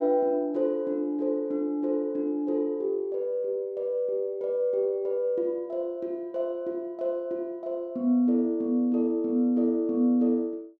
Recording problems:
none

